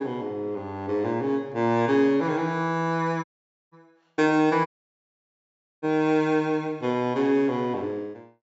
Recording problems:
treble cut off; nothing above 8 kHz
dropout; at 3 s and at 4.5 s for 1 s

